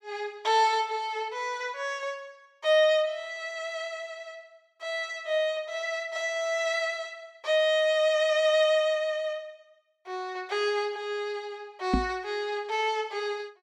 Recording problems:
knock on the microphone; at 12 s; peak +6 dB vs average level

